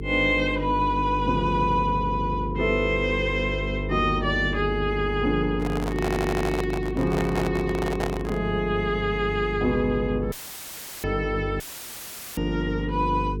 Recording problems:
hum; 50 Hz, harmonics up to 450 Hz, SNR 6 dB
microphone handling noise; from 5.5 to 8.5 s; peak 0 dB vs average level
stutter; at 6 s
audio cutting out; at 10 s for 0.5 s and at 12 s for 1 s; filled with static

